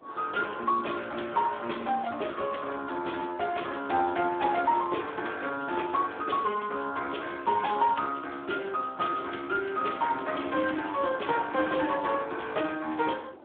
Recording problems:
phone line; 240 Hz to 3.6 kHz, Speex
wind noise; below 790 Hz, SNR 22 dB

